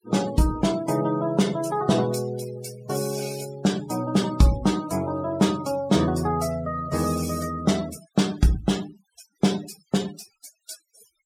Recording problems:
noise reduction artefacts; signal-to-artefact ratio 17 dB

